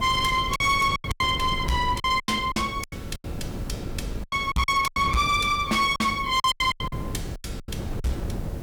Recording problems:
distorted audio; hard clipping, signal-to-distortion ratio 10 dB
electrical hum; 50 Hz, harmonics up to 550 Hz, SNR 20 dB
hiss; slope +1 dB per octave, SNR 29 dB
wind on the microphone; below 230 Hz, SNR 12 dB
packet loss; 16% of the sound replaced, filled with silence

